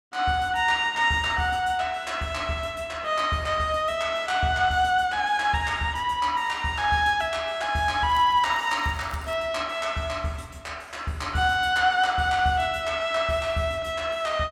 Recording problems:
crackle; from 8 to 9.5 s; loose cable, SNR 28 dB

